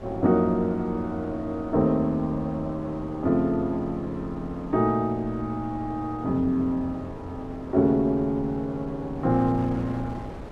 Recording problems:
wind noise; below 520 Hz, SNR 15 dB

